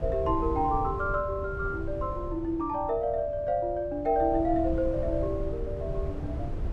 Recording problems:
wind on the microphone; below 130 Hz, SNR 8 dB

